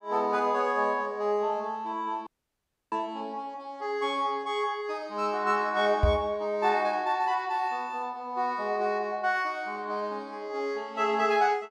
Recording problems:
audio cutting out; at 2.5 s for 0.5 s
knock on the microphone; at 3 s and at 6 s; peak +7 dB vs average level

